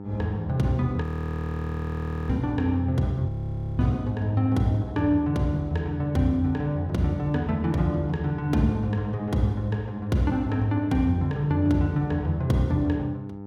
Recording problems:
hum; 50 Hz, harmonics up to 1 kHz, SNR 15 dB
frozen audio; at 1 s for 1.5 s and at 3.5 s for 0.5 s

